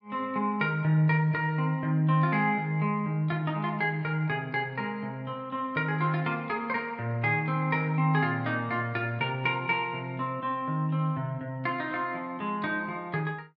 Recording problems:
none

